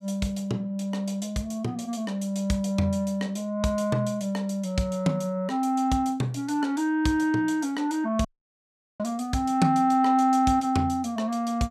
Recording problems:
audio cutting out; at 8.5 s for 1 s

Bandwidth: 15 kHz